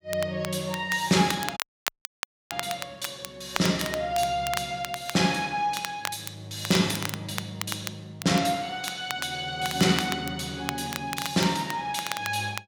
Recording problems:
crackle; vinyl, SNR 9 dB
audio cutting out; at 1.5 s for 1 s

